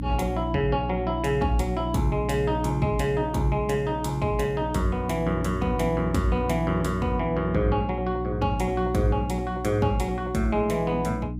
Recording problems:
electrical hum; 60 Hz, harmonics up to 300 Hz, SNR 6 dB

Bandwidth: 15.5 kHz